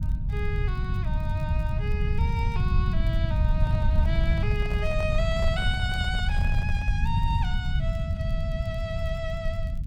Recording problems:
low-frequency rumble; below 100 Hz, SNR -6 dB
crackle; vinyl, SNR 28 dB
handling noise; from 3.5 to 7 s; peak -4 dB vs average level

